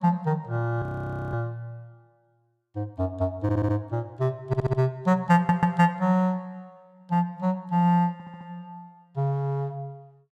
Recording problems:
frozen audio; at 1 s for 0.5 s
audio stuttering; 4 times, first at 3.5 s

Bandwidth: 14.5 kHz